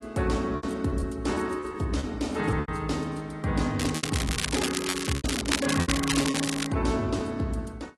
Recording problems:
lossy compression; AAC, log-spectral distance 5 dB
packet loss; 10% of the sound replaced, filled with repeated pitch periods
crackle; from 4 to 6.5 s; loose cable, SNR 2 dB

